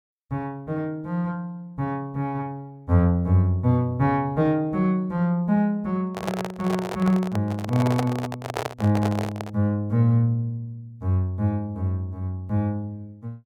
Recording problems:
handling noise; from 6 to 9.5 s; peak +1 dB vs average level

